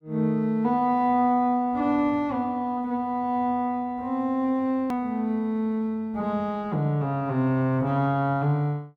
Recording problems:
edit click; at 5 s

